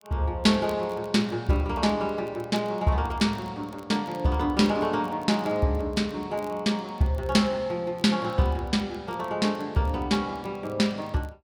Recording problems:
crackle; vinyl, SNR 30 dB

